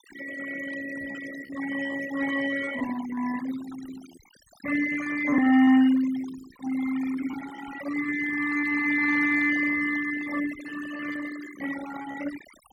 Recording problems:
denoising artefacts; signal-to-artefact ratio 12 dB
packet loss; 9% of the sound replaced, filled with repeated pitch periods

